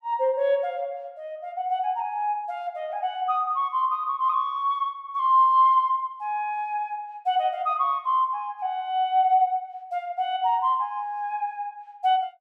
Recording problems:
none

